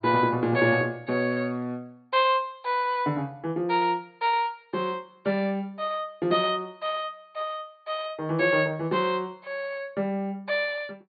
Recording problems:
treble cut off; nothing above 4.6 kHz

